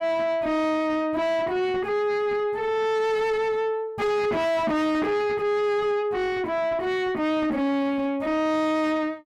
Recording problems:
distortion; soft clipping, signal-to-distortion ratio 6 dB

